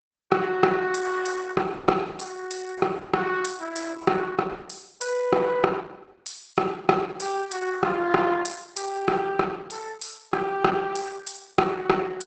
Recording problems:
lossy codec; Opus, log-spectral distance 6 dB, nothing above 8 kHz

